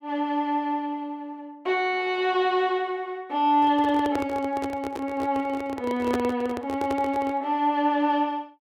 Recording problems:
microphone handling noise; from 3.5 to 7.5 s; peak +1 dB vs average level

